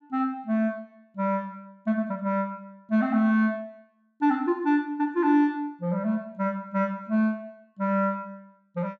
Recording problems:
none

